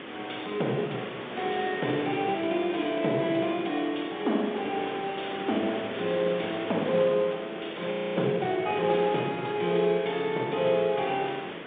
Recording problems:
phone line; 240 Hz to 3.6 kHz, G.711
hiss; SNR 9 dB
frozen audio; at 8 s

